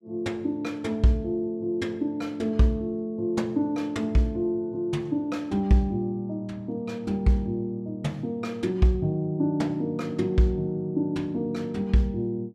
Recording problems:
none

